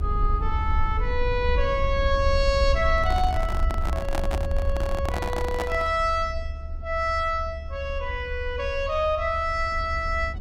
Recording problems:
low-frequency rumble; below 72 Hz, SNR 4 dB
microphone handling noise; from 3 to 6 s; peak +1 dB vs average level

